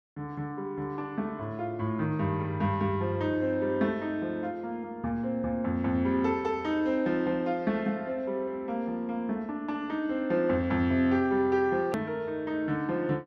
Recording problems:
edit click; at 12 s

